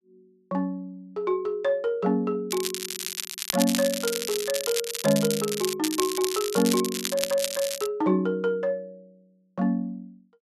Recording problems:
crackling; from 2.5 to 5.5 s and from 6 to 8 s; loose cable, SNR 4 dB

